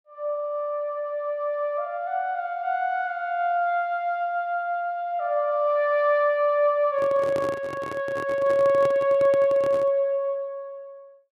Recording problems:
microphone handling noise; from 7 to 10 s; peak -6 dB vs average level

